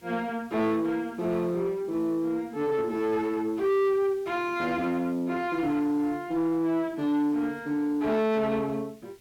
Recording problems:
distortion; soft clipping, signal-to-distortion ratio 10 dB
background hiss; SNR 29 dB

